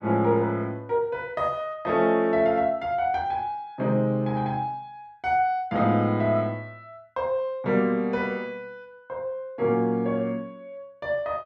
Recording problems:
none

